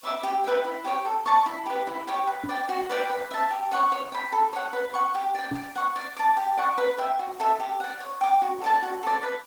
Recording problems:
lossy codec; Opus, log-spectral distance 4 dB, nothing above 19 kHz
background hiss; slope +3 dB per octave, SNR 25 dB
microphone thump; at 2.5 s and at 5.5 s; peak -2 dB vs average level

